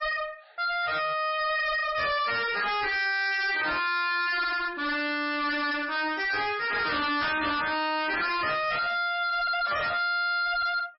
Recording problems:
lossy codec; MP3, log-spectral distance 6 dB, nothing above 5.2 kHz
distorted audio; soft clipping, signal-to-distortion ratio 5 dB

